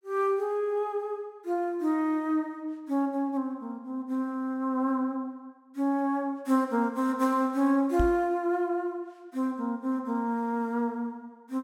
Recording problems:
knock on the microphone; at 8 s; peak +3 dB vs average level

